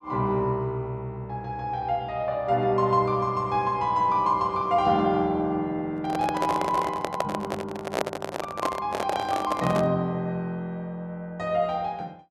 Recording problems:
handling noise; from 6 to 10 s; peak +4 dB vs average level

